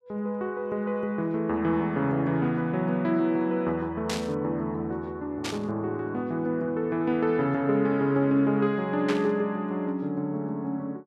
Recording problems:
static burst; at 4 s, at 5.5 s and at 9 s; peak -2 dB vs average level

